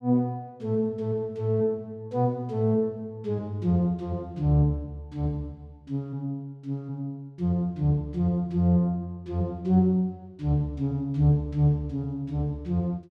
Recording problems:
none

